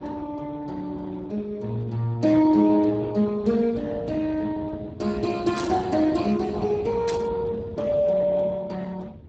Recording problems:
lossy compression; Speex, log-spectral distance 3 dB
low-frequency rumble; below 230 Hz, SNR 17 dB
static burst; at 5.5 s and at 7 s; peak -5 dB vs average level

